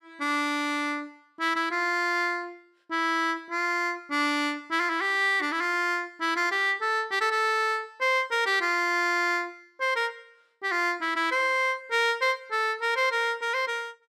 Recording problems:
none

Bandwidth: 14.5 kHz